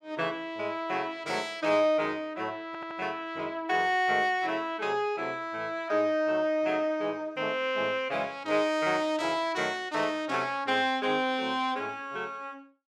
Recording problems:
audio stuttering; at 2.5 s

